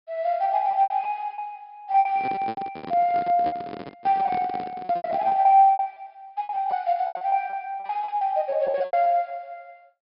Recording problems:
low-pass filter; nothing above 5.5 kHz
packet loss; 18% of the sound replaced, filled with repeated pitch periods
microphone handling noise; from 2 to 5.5 s; peak -6 dB vs average level

